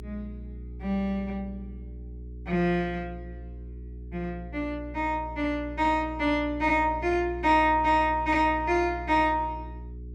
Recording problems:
hum; 60 Hz, harmonics up to 420 Hz, SNR 14 dB

